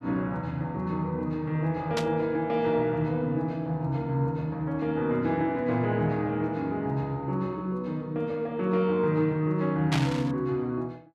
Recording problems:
static burst; at 2 s and at 10 s; peak +2 dB vs average level

